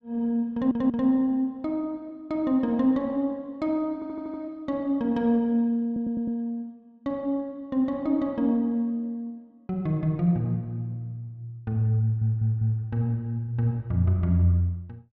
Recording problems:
audio stuttering; 4 times, first at 0.5 s

